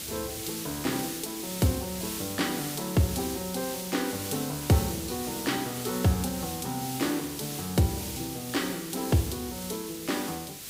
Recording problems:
background hiss; SNR 5 dB

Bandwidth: 15.5 kHz